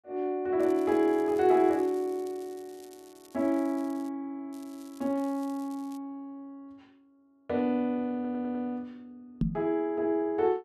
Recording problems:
crackling; from 0.5 to 4 s and from 4.5 to 6 s; loose cable, SNR 27 dB
audio stuttering; at 8 s
microphone thump; at 9.5 s; peak +5 dB vs average level

